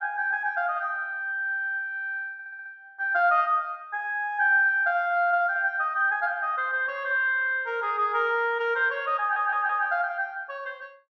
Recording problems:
stutter; at 2.5 s and at 9 s

